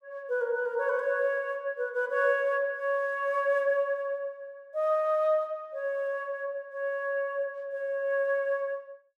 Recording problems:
none

